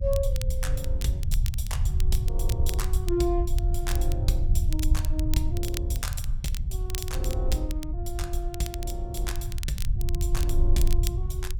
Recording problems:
low-frequency rumble; below 72 Hz, SNR -5 dB
crackling; vinyl, SNR 7 dB

